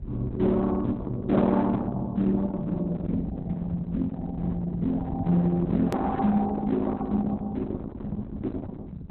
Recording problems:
lossy compression; Opus, log-spectral distance 2 dB, nothing above 13.3 kHz
distorted audio; hard clipping, uneven, signal-to-distortion ratio 12 dB
rumble; below 200 Hz, SNR 9 dB
edit click; at 6 s

